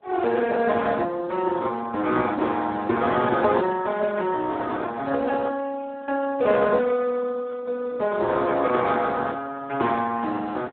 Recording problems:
telephone audio; 240 Hz to 2.8 kHz, Speex
wind on the microphone; below 610 Hz, SNR 23 dB

